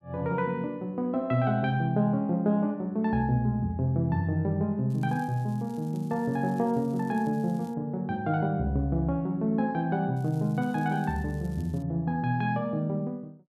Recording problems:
crackling; from 5 to 7.5 s and from 10 to 12 s; loose cable, SNR 29 dB

